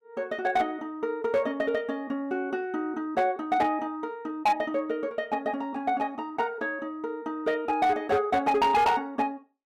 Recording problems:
distortion; hard clipping, uneven, signal-to-distortion ratio 12 dB

